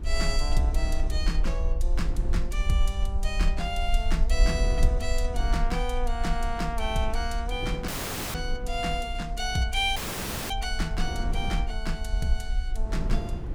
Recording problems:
rumble; below 48 Hz, strongest tone 22 Hz, SNR 0 dB
wind noise; below 270 Hz, SNR 9 dB
audio cutting out; at 8 s and at 10 s for 0.5 s

